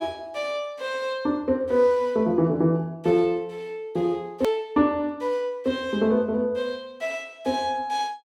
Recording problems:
click at an edit; at 4.5 s

